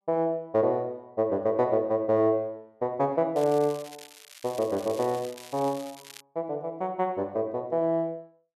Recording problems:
crackle; from 3.5 to 6 s; loose cable, SNR 18 dB

